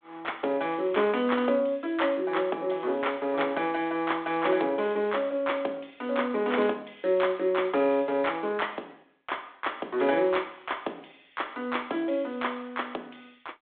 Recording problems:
telephone audio; 220 Hz to 3.6 kHz, G.726

